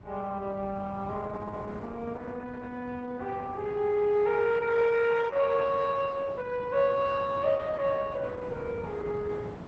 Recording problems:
codec artefacts; Opus, log-spectral distance 3 dB, nothing above 7.3 kHz
wind noise; below 450 Hz, SNR 15 dB

